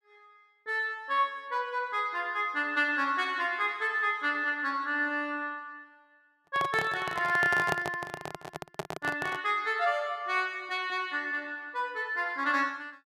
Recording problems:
microphone handling noise; from 6.5 to 9.5 s; peak +3 dB vs average level

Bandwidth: 14 kHz